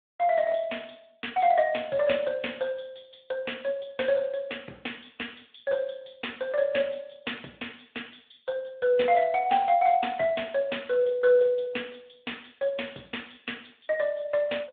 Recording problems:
telephone audio; 280 Hz to 3.6 kHz, Speex

